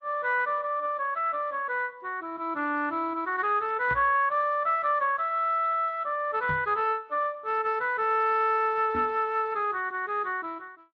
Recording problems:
lossy compression; AAC, then Speex, log-spectral distance 2 dB
knock on the microphone; at 4 s, at 6.5 s and at 9 s; peak -5 dB vs average level

